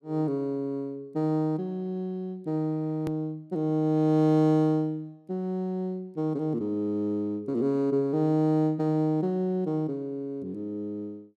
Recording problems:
hard cut with a click; at 3 s

